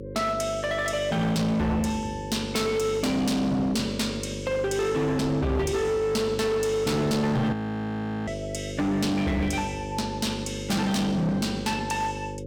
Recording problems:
distorted audio; hard clipping, signal-to-distortion ratio 7 dB
electrical hum; 50 Hz, harmonics up to 550 Hz, SNR 10 dB
frozen audio; at 7.5 s for 0.5 s

